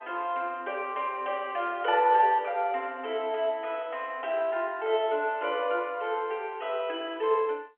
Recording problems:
phone line; 300 Hz to 3.3 kHz, G.711

